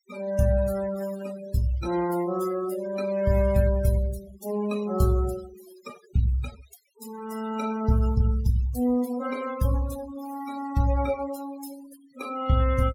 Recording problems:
denoising artefacts; signal-to-artefact ratio 16 dB

